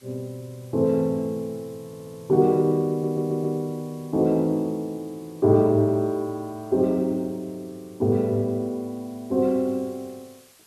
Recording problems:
hiss; slope 0 dB per octave, SNR 29 dB
stutter; at 2 s and at 3 s

